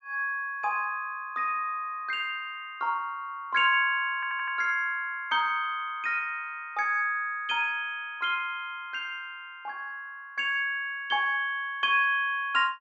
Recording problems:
low-pass filter; nothing above 8 kHz
stutter; at 4 s

